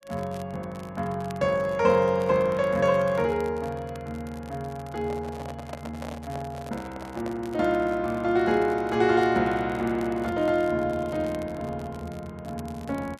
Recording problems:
crackling; vinyl, SNR 25 dB
microphone handling noise; from 5 to 7.5 s; peak -6 dB vs average level

